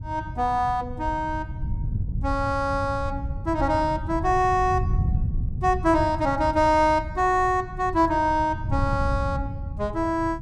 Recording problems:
wind on the microphone; below 120 Hz, SNR 7 dB

